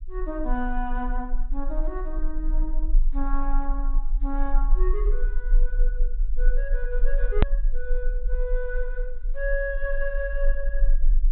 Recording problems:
low-pass filter; nothing above 4 kHz
low-frequency rumble; below 34 Hz, strongest tone 22 Hz, SNR -5 dB
hard cut with a click; at 7.5 s

